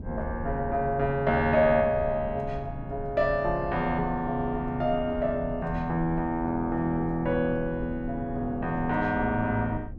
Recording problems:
wind noise; below 150 Hz, SNR 13 dB

